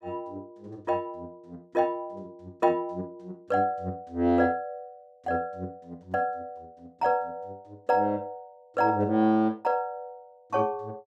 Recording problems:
none

